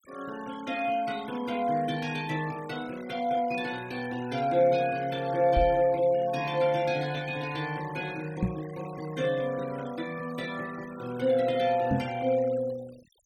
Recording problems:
noise reduction artefacts; signal-to-artefact ratio 20 dB
knock on the microphone; at 5.5 s, at 8.5 s and at 12 s; peak +5 dB vs average level

